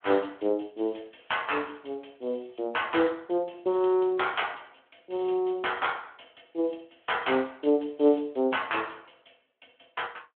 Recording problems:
phone line; 260 Hz to 3.4 kHz, Speex

